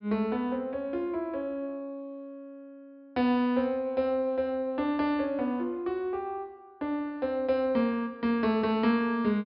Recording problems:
low-pass filter; nothing above 5.5 kHz

